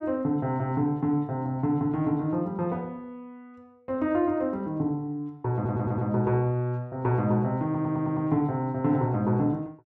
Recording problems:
stutter; at 5.5 s and at 7.5 s

